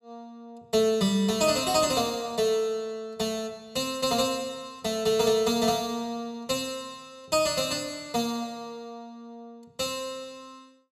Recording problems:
none

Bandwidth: 15 kHz